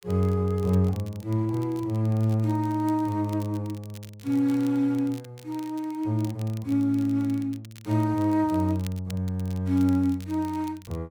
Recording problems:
crackle; vinyl, SNR 25 dB

